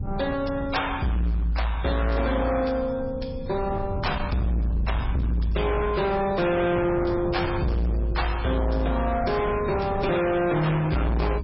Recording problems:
codec artefacts; MP3, log-spectral distance 3 dB, nothing above 5.5 kHz
distorted audio; soft clipping, signal-to-distortion ratio 6 dB
wind on the microphone; below 190 Hz, SNR 9 dB

